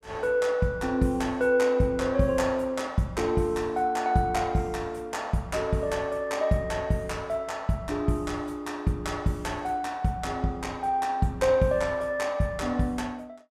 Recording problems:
none

